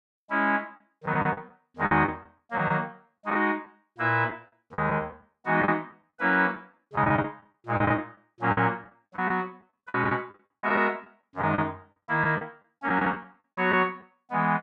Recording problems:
packet loss; 10% of the sound replaced, filled with the last packet

